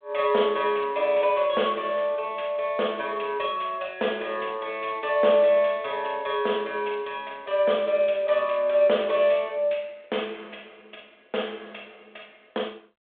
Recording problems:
telephone audio; 300 Hz to 3.6 kHz, G.726

